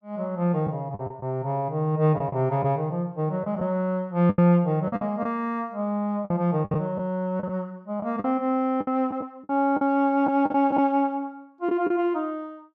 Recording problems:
lost packets; 7% of the sound replaced, filled with the last packet

